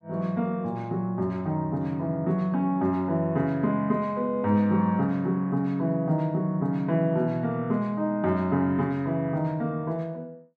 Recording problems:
none

